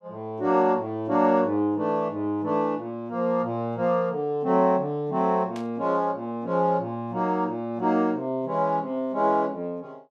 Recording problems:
burst of static; at 5.5 s; peak -14 dB vs average level

